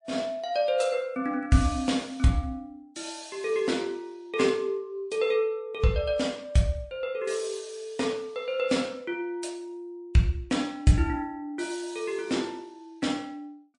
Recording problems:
lossy compression; MP3, then MP3, log-spectral distance 2 dB

